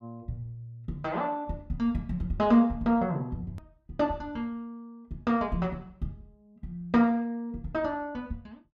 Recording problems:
edit click; at 3.5 s

